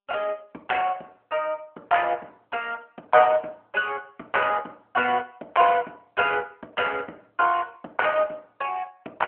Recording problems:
phone line; 280 Hz to 3.3 kHz, AMR-NB

